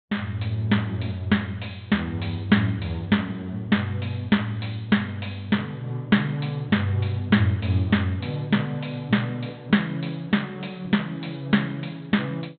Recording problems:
treble missing; nothing above 4 kHz

